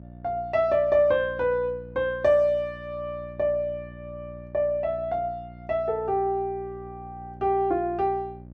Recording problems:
hum; 60 Hz, harmonics up to 660 Hz, SNR 18 dB

